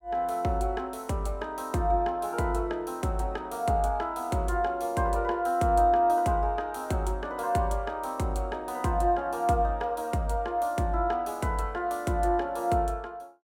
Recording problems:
none

